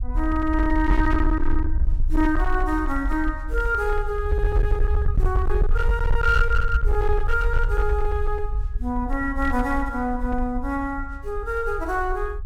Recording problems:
distortion; hard clipping, uneven, signal-to-distortion ratio 11 dB
low-frequency rumble; below 58 Hz, SNR 1 dB

